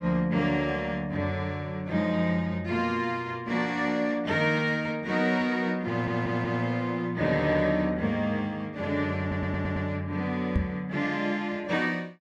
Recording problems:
audio stuttering; at 6 s and at 9 s
microphone thump; at 11 s; peak +5 dB vs average level

